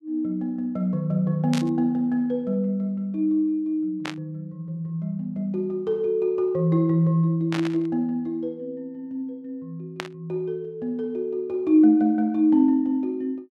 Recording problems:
static burst; 4 times, first at 1.5 s; peak -3 dB vs average level

